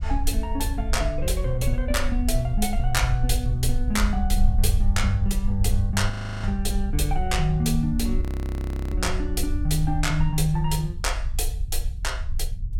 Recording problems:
low-frequency rumble; below 64 Hz, SNR 1 dB
frozen audio; at 6 s and at 8 s for 0.5 s

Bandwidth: 17 kHz